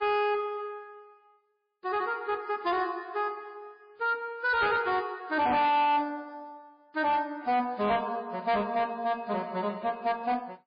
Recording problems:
lossy compression; MP3, log-spectral distance 2 dB, nothing above 4.2 kHz
distorted audio; hard clipping, signal-to-distortion ratio 11 dB

